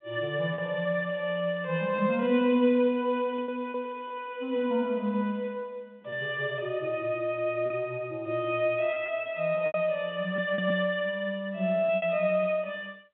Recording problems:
phone line; 150 Hz to 3.5 kHz, G.711
packet loss; 4% of the sound replaced, filled with repeated pitch periods

